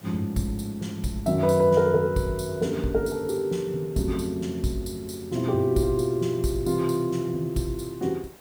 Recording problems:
hiss; slope -5 dB per octave, SNR 24 dB

